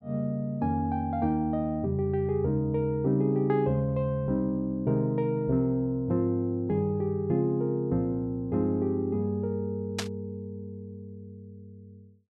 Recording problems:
burst of static; at 10 s; peak +1 dB vs average level

